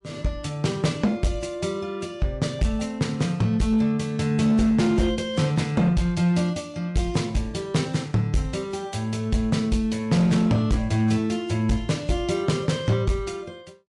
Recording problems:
codec artefacts; MP3, log-spectral distance 2 dB
distorted audio; hard clipping, uneven, signal-to-distortion ratio 12 dB

